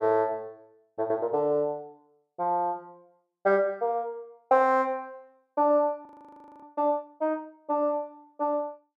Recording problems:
frozen audio; at 6 s for 0.5 s

